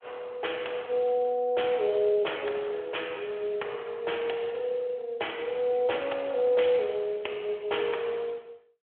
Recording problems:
telephone audio; 370 Hz to 3.4 kHz, Speex

